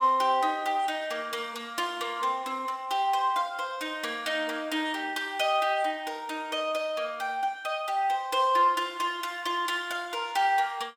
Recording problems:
none

